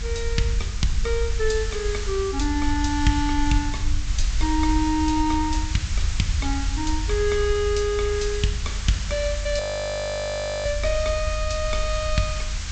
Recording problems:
treble cut off; nothing above 8 kHz
hum; 50 Hz, harmonics up to 800 Hz, SNR 19 dB
hiss; SNR 9 dB
rumble; below 72 Hz, SNR 3 dB
audio freezing; at 9.5 s for 1 s

